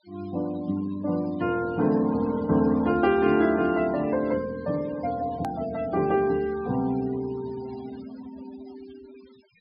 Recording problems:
treble cut off; nothing above 5.5 kHz
denoising artefacts; signal-to-artefact ratio 21 dB
hard cut with a click; at 5.5 s

